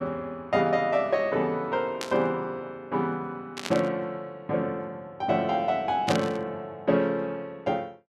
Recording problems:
burst of static; at 2 s, at 3.5 s and at 6 s; peak +1 dB vs average level

